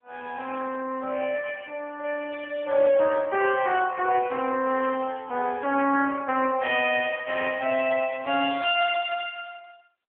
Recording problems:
telephone audio; 320 Hz to 3.4 kHz, AMR-NB

